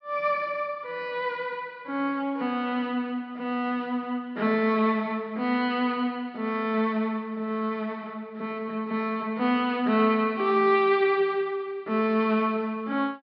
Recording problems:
treble missing; nothing above 5.5 kHz

